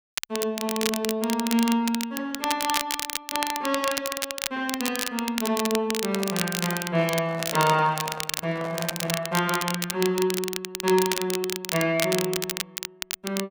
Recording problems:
crackling; vinyl, SNR 4 dB
microphone handling noise; from 6 to 9.5 s; peak -7 dB vs average level

